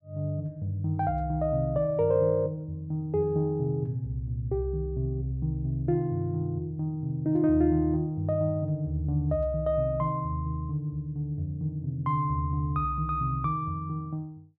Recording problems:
none

